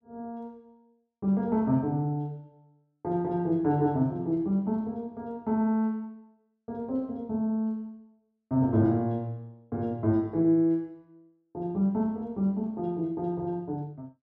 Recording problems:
none

